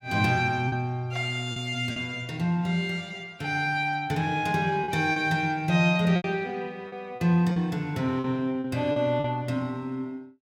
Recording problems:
packet loss; 5% of the sound replaced, filled with repeated pitch periods

